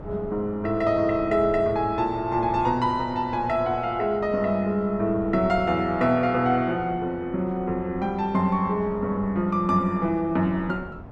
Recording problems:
wind noise; below 420 Hz, SNR 17 dB

